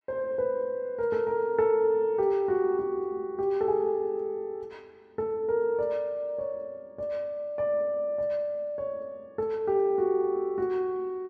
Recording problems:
none

